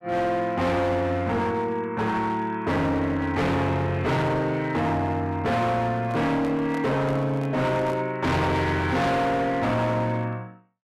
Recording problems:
distortion; hard clipping, signal-to-distortion ratio 7 dB
microphone handling noise; from 6 to 8 s; peak -8 dB vs average level

